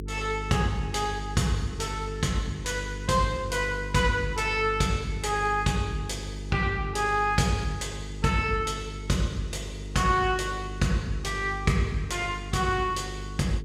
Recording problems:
electrical hum; 50 Hz, harmonics up to 450 Hz, SNR 10 dB

